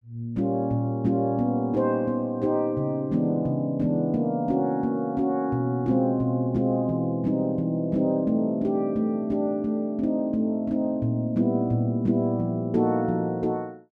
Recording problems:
none

